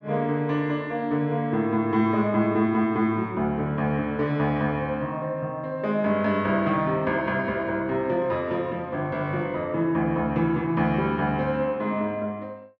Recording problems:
none

